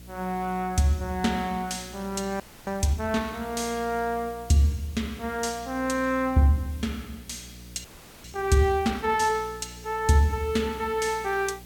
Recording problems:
hum; 60 Hz, harmonics up to 660 Hz, SNR 20 dB
background hiss; slope 0 dB per octave, SNR 23 dB
audio freezing; at 2.5 s and at 8 s

